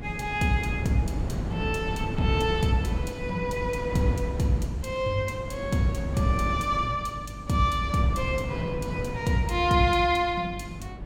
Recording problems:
hum; 50 Hz, harmonics up to 300 Hz, SNR 15 dB
wind on the microphone; below 290 Hz, SNR 9 dB

